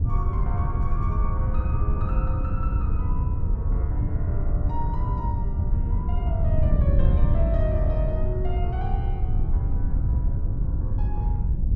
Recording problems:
wind noise; below 92 Hz, SNR -10 dB

